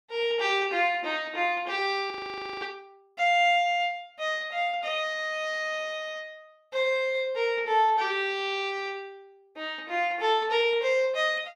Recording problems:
frozen audio; at 2 s for 0.5 s

